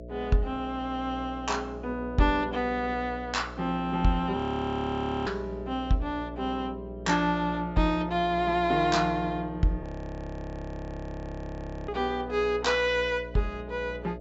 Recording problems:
treble cut off; nothing above 8 kHz
electrical hum; 60 Hz, harmonics up to 660 Hz, SNR 12 dB
frozen audio; at 4.5 s for 1 s and at 10 s for 2 s

